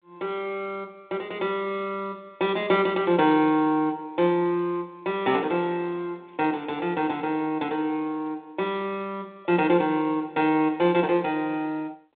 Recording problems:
phone line; 240 Hz to 3.7 kHz, G.726

